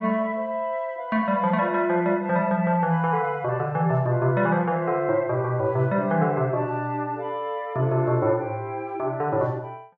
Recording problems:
treble cut off; nothing above 8 kHz

